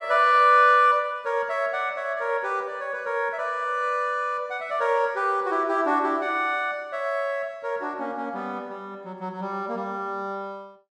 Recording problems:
none

